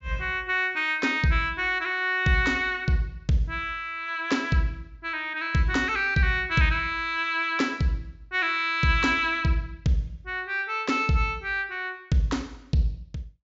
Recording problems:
low-pass filter; nothing above 7.5 kHz

